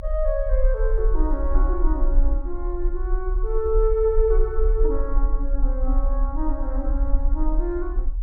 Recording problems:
low-frequency rumble; below 40 Hz, strongest tone 34 Hz, SNR -2 dB

